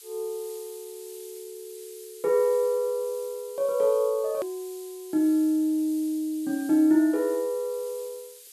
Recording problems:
background hiss; SNR 19 dB
hard cut with a click; at 4.5 s

